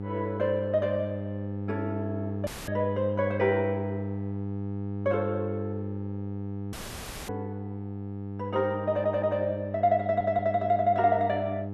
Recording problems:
hum; 50 Hz, harmonics up to 900 Hz, SNR 6 dB
audio cutting out; at 2.5 s and at 6.5 s for 0.5 s
stutter; at 9 s and at 10 s

